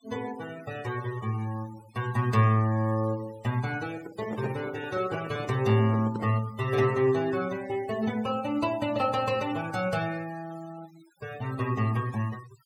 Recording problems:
denoising artefacts; signal-to-artefact ratio 19 dB
handling noise; from 4 to 6.5 s; peak -4 dB vs average level

